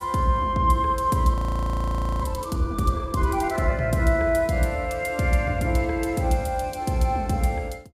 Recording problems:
frozen audio; at 1.5 s for 1 s

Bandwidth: 15.5 kHz